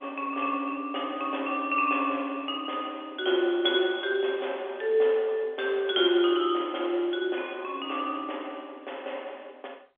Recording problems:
phone line; 320 Hz to 3.5 kHz, G.711

